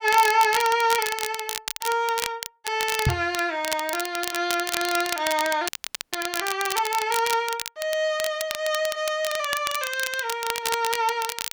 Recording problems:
crackling; vinyl, SNR 6 dB
microphone bump; at 3 s; peak +6 dB vs average level
frozen audio; at 5.5 s

